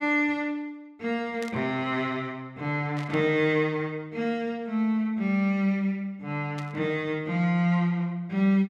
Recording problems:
static burst; at 1.5 s, at 3 s and at 6.5 s; peak -10 dB vs average level

